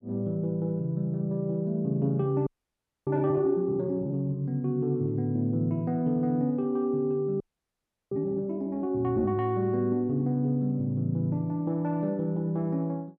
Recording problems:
audio freezing; at 2.5 s for 0.5 s and at 7.5 s for 0.5 s

